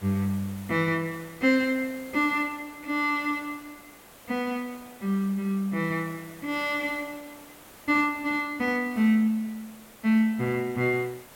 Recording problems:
hiss; slope -4 dB per octave, SNR 21 dB

